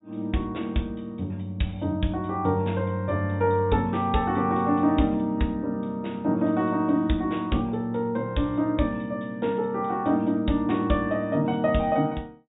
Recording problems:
treble cut off; nothing above 4 kHz

